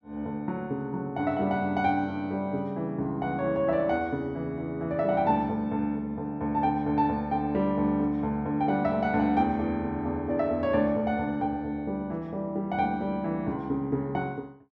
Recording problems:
none

